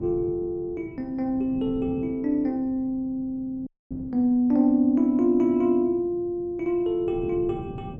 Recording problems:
wind on the microphone; below 250 Hz, SNR 18 dB
dropout; at 3.5 s

